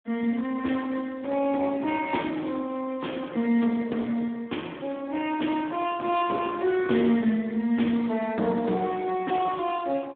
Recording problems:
telephone audio; 170 Hz to 3.6 kHz, Speex

